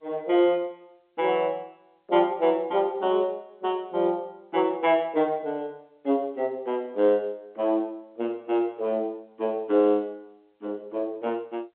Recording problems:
phone line; 260 Hz to 3.5 kHz, G.711

